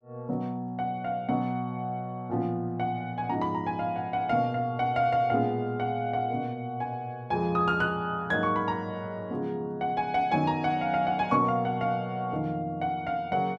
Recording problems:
none

